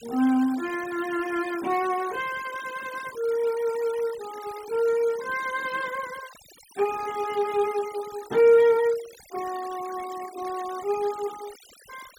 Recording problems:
noise reduction artefacts; signal-to-artefact ratio 18 dB

